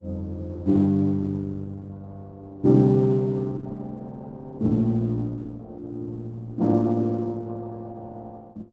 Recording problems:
lossy compression; Opus, log-spectral distance 2 dB, nothing above 7.6 kHz

